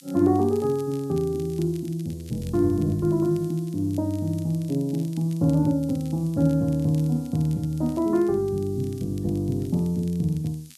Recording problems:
hiss; SNR 27 dB
crackling; vinyl, SNR 27 dB

